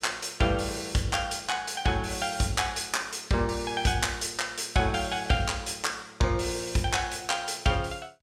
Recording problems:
none

